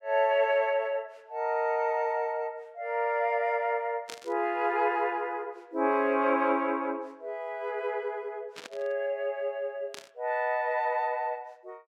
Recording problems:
static burst; at 4 s, at 8.5 s and at 10 s; peak -7 dB vs average level

